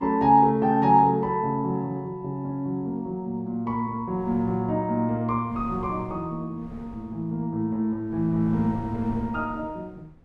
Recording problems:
wind noise; below 310 Hz, SNR 18 dB

